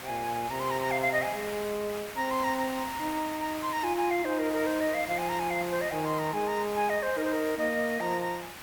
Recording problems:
background hiss; SNR 10 dB

